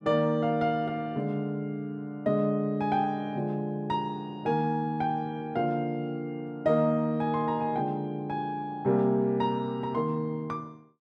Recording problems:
none

